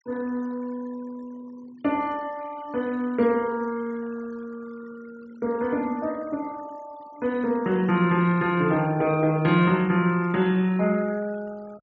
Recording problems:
treble cut off; nothing above 8 kHz
noise reduction artefacts; signal-to-artefact ratio 24 dB

